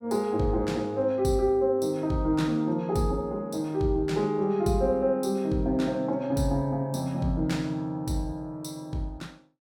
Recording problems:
none

